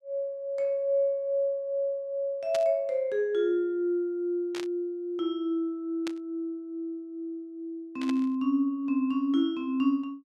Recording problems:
burst of static; 4 times, first at 2.5 s; peak -4 dB vs average level

